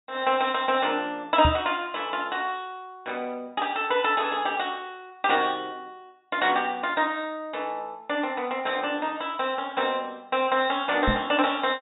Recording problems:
treble cut off; nothing above 4 kHz
microphone bump; at 1.5 s and at 11 s; peak +4 dB vs average level

